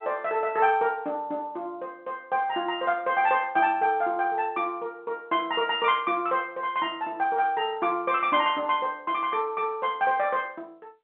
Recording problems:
telephone audio; 190 Hz to 3.5 kHz, G.711

